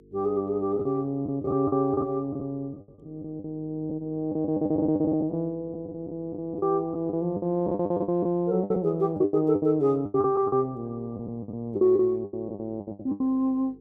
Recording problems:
hum; 50 Hz, harmonics up to 500 Hz, SNR 26 dB
lost packets; 15% of the sound replaced, filled with the last packet

